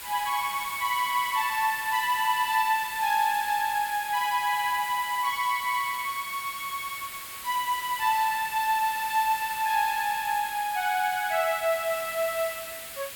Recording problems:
hiss; SNR 10 dB

